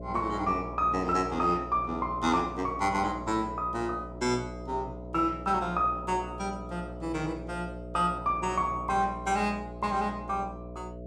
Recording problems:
hum; 60 Hz, harmonics up to 660 Hz, SNR 11 dB

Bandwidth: 16 kHz